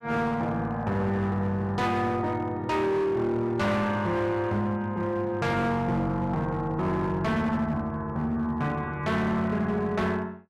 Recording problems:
distortion; hard clipping, signal-to-distortion ratio 11 dB

